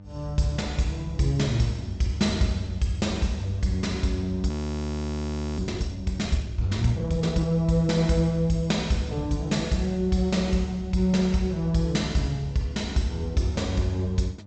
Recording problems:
low-pass filter; nothing above 8 kHz
electrical hum; 50 Hz, harmonics up to 900 Hz, SNR 20 dB
frozen audio; at 4.5 s for 1 s

